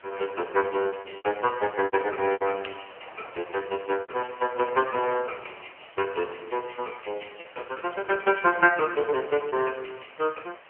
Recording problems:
telephone audio; 340 Hz to 3.1 kHz, AMR-NB
background hiss; SNR 24 dB
wind on the microphone; below 1.2 kHz, SNR 23 dB
lost packets; 6% of the sound replaced, filled with repeated pitch periods

